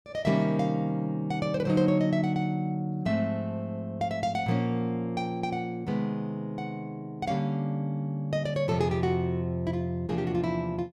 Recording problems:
none

